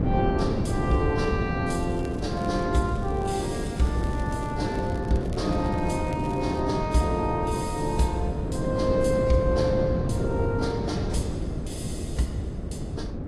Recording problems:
codec artefacts; AAC, log-spectral distance 2 dB
wind on the microphone; below 300 Hz, SNR 2 dB
crackling; at 2 s and from 3 to 6.5 s; loose cable, SNR 24 dB

